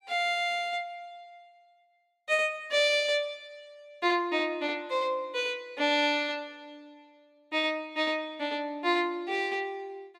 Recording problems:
none

